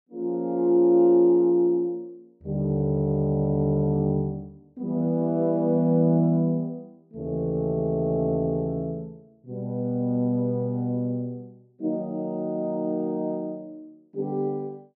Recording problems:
none

